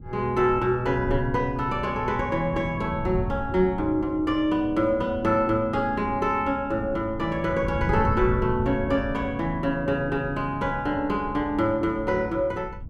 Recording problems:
wind on the microphone; below 130 Hz, SNR 11 dB

